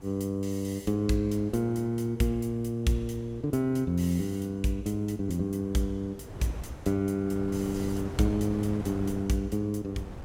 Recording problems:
wind noise; below 430 Hz, SNR 14 dB

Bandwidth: 17 kHz